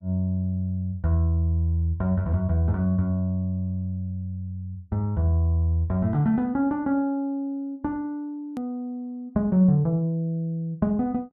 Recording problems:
edit click; at 8.5 s

